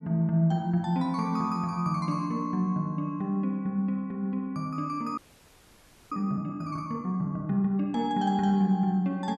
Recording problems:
frozen audio; at 5 s for 1 s

